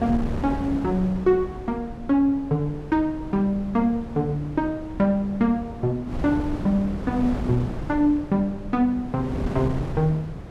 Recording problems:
wind noise; below 310 Hz, SNR 9 dB

